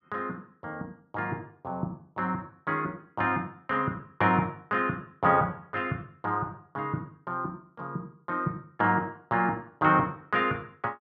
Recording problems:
none

